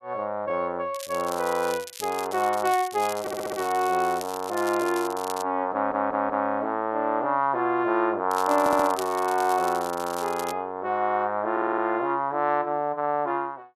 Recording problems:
crackle; from 1 to 5.5 s and from 8.5 to 11 s; loose cable, SNR 14 dB
stutter; 4 times, first at 3 s

